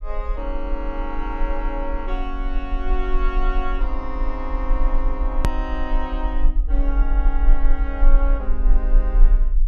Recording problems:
rumble; below 38 Hz, strongest tone 22 Hz, SNR -6 dB
hard cut with a click; at 5.5 s

